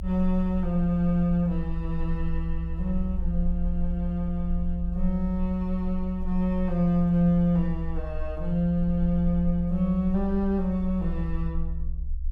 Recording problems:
low-frequency rumble; below 66 Hz, strongest tone 20 Hz, SNR 7 dB

